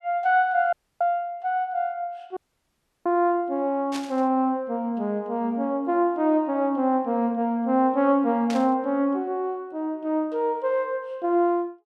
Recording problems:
audio cutting out; at 0.5 s and at 2.5 s for 0.5 s
static burst; at 4 s and at 8.5 s; peak -6 dB vs average level

